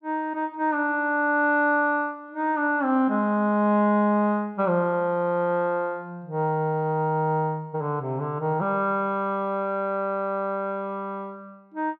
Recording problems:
none

